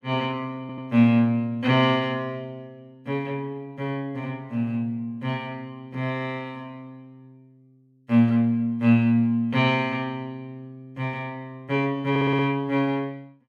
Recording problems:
audio stuttering; at 0.5 s and at 12 s

